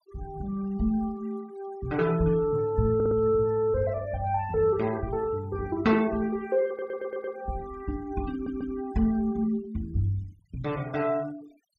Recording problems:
denoising artefacts; signal-to-artefact ratio 23 dB
stutter; at 3 s, at 6.5 s and at 8.5 s

